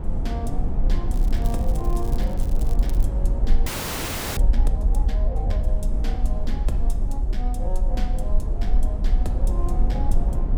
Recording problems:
hum; 60 Hz, harmonics up to 960 Hz, SNR 24 dB
low-frequency rumble; below 46 Hz, SNR -9 dB
wind noise; below 210 Hz, SNR -2 dB
crackling; from 1 to 3 s; loose cable, SNR 11 dB
frozen audio; at 3.5 s for 0.5 s

